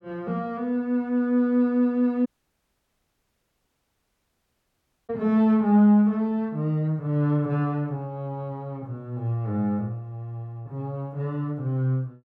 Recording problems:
audio cutting out; at 2.5 s for 3 s

